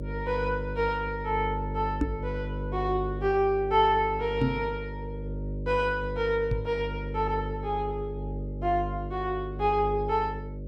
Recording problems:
hum; 50 Hz, harmonics up to 600 Hz, SNR 7 dB
microphone thump; at 2 s, at 4.5 s and at 6.5 s; peak +6 dB vs average level

